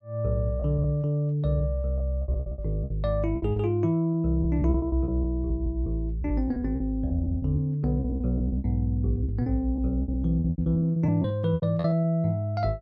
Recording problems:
packet loss; 15% of the sound replaced, filled with repeated pitch periods

